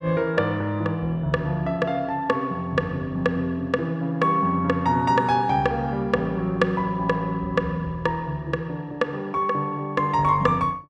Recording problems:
none

